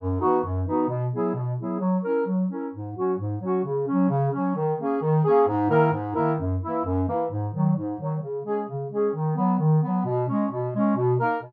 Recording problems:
none

